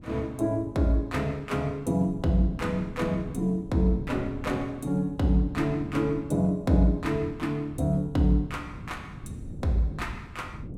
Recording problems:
wind on the microphone; below 220 Hz, SNR 13 dB

